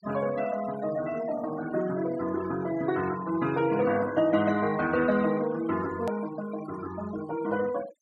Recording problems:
noise reduction artefacts; signal-to-artefact ratio 15 dB
hard cut with a click; at 6 s

